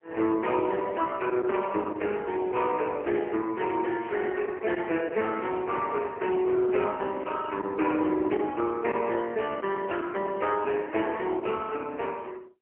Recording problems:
phone line; 240 Hz to 3.1 kHz, AMR-NB, then MP3
lost packets; 1.3% of the sound replaced, filled with silence
static burst; at 1.5 s, at 4 s and at 5.5 s; peak -13 dB vs average level

